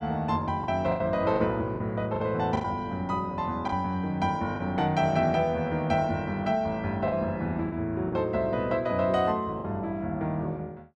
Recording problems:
packet loss; 5% of the sound replaced, filled with the last packet

